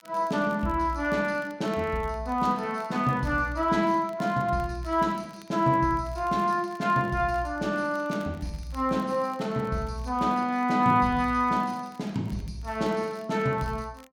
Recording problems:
crackling; vinyl, SNR 29 dB

